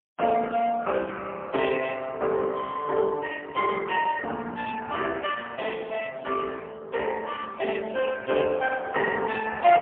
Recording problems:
phone line; 240 Hz to 3.3 kHz, AMR-NB, then MP3

